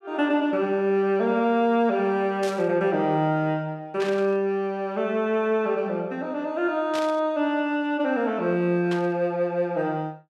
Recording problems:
static burst; 4 times, first at 2.5 s; peak -7 dB vs average level

